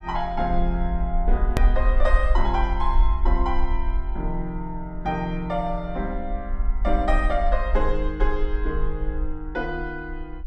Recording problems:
rumble; below 48 Hz, SNR -1 dB
click at an edit; at 1.5 s

